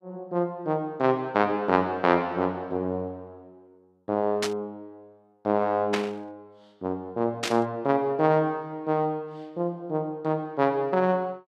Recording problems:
static burst; at 4.5 s, at 6 s and at 7.5 s; peak +2 dB vs average level

